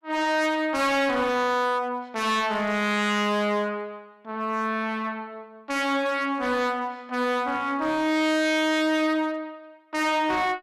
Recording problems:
distorted audio; hard clipping, uneven, signal-to-distortion ratio 6 dB

